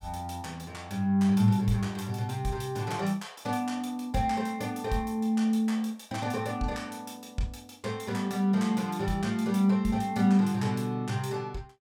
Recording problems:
none

